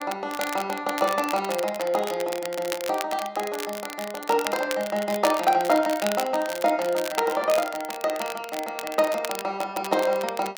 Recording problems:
crackling; vinyl, SNR 10 dB

